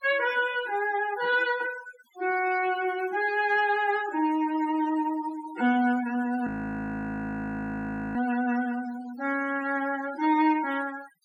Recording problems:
noise reduction artefacts; signal-to-artefact ratio 16 dB
frozen audio; at 6.5 s for 1.5 s

